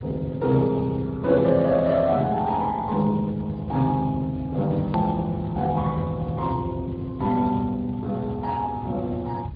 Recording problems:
low-pass filter; nothing above 4.8 kHz
lossy codec; Speex, log-spectral distance 3 dB
low-frequency rumble; below 140 Hz, SNR 13 dB
hard cut with a click; at 5 s

